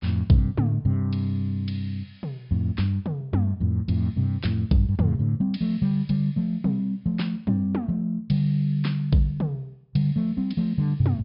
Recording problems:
treble missing; nothing above 5.5 kHz

